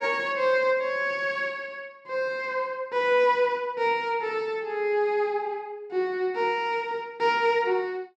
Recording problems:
none

